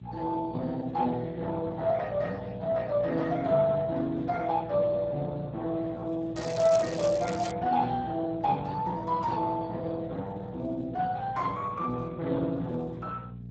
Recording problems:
lossy codec; Speex, log-spectral distance 4 dB
hum; 60 Hz, harmonics up to 480 Hz, SNR 12 dB
crackling; from 6.5 to 7.5 s; loose cable, SNR 12 dB

